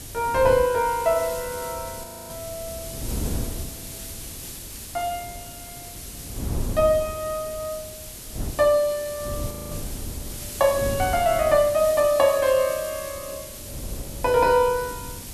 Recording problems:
hiss; SNR 14 dB
wind noise; below 220 Hz, SNR 14 dB
audio freezing; at 2 s and at 9.5 s

